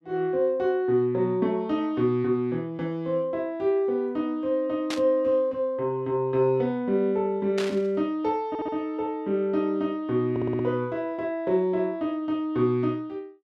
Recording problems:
burst of static; at 5 s and at 7.5 s; peak -3 dB vs average level
stutter; at 8.5 s and at 10 s

